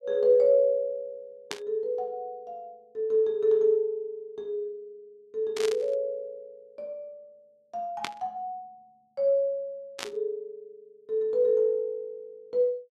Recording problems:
static burst; 4 times, first at 1.5 s; peak -1 dB vs average level

